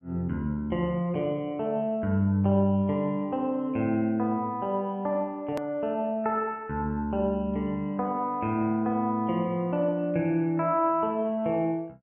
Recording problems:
treble cut off; nothing above 3 kHz
click at an edit; at 5.5 s

